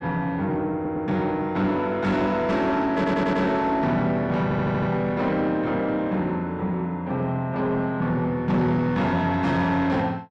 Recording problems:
distortion; soft clipping, signal-to-distortion ratio 10 dB
audio stuttering; at 0.5 s, at 3 s and at 4.5 s

